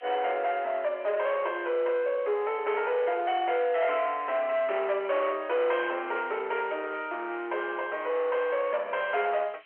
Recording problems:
telephone audio; 370 Hz to 3.2 kHz, G.711
distortion; soft clipping, signal-to-distortion ratio 11 dB
background hiss; SNR 27 dB

